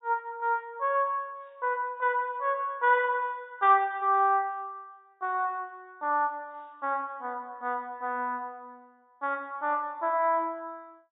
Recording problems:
treble missing; nothing above 4 kHz

